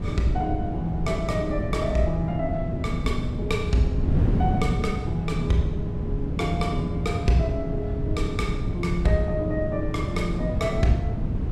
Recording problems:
wind on the microphone; below 170 Hz, SNR 1 dB

